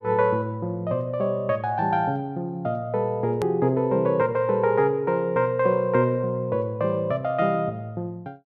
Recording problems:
hard cut with a click; at 3.5 s

